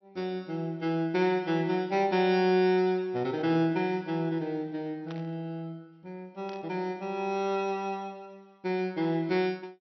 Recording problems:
low-pass filter; nothing above 5.9 kHz
static burst; at 5 s and at 6.5 s; peak -13 dB vs average level

